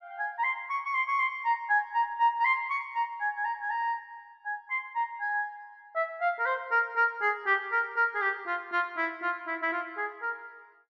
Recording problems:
none

